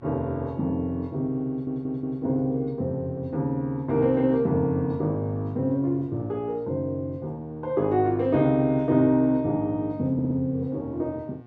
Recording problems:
electrical hum; 60 Hz, harmonics up to 1.4 kHz, SNR 25 dB
stutter; at 1.5 s and at 10 s

